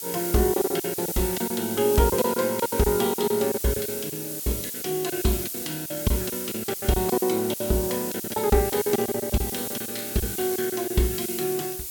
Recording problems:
hiss; SNR 4 dB
crackle; vinyl, SNR 26 dB
packet loss; 14% of the sound replaced, filled with silence

